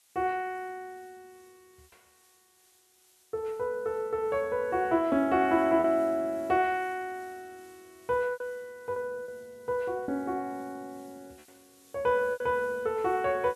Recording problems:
hiss; slope +2 dB per octave, SNR 29 dB
packet loss; 3% of the sound replaced, filled with repeated pitch periods

